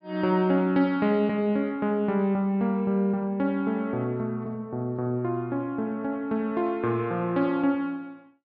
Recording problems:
treble missing; nothing above 5.5 kHz

